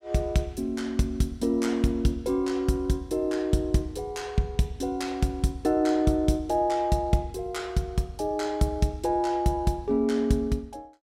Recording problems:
none

